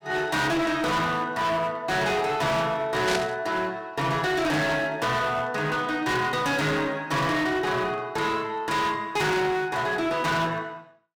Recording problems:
distortion; hard clipping, signal-to-distortion ratio 7 dB
burst of static; at 3 s; peak +1 dB vs average level

